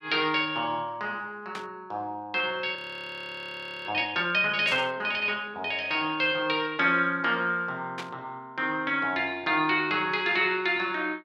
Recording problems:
burst of static; at 1.5 s, at 4.5 s and at 8 s; peak -6 dB vs average level
audio freezing; at 3 s for 1 s

